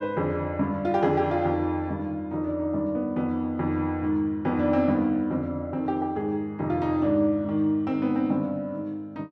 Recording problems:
none

